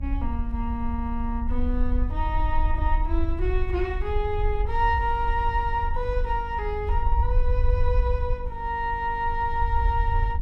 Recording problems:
hum; 50 Hz, harmonics up to 900 Hz, SNR 18 dB
rumble; below 62 Hz, SNR 0 dB

